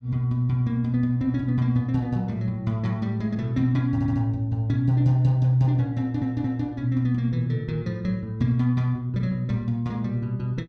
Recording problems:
stutter; at 4 s and at 6 s

